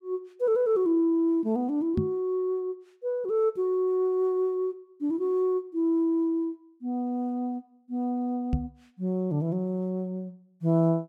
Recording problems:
knock on the microphone; at 2 s and at 8.5 s; peak +5 dB vs average level

